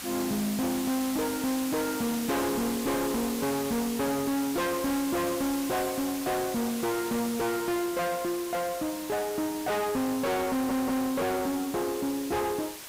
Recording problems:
distorted audio; soft clipping, signal-to-distortion ratio 7 dB
background hiss; slope 0 dB per octave, SNR 8 dB
stutter; at 11 s

